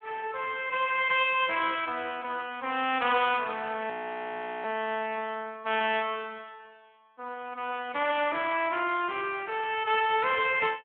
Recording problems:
telephone audio; 260 Hz to 3.4 kHz, Speex
frozen audio; at 4 s for 0.5 s

